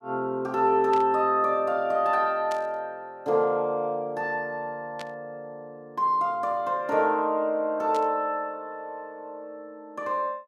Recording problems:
burst of static; 4 times, first at 1 s; peak -9 dB vs average level

